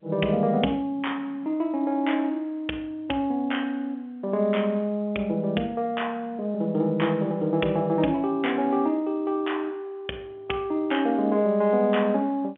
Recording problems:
phone line; 170 Hz to 3.5 kHz, G.711

